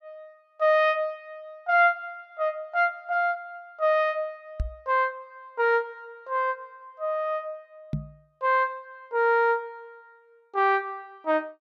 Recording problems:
microphone bump; at 4.5 s and at 8 s; peak 0 dB vs average level

